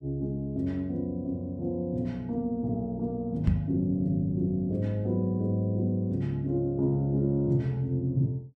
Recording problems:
microphone bump; at 3.5 s; peak +7 dB vs average level

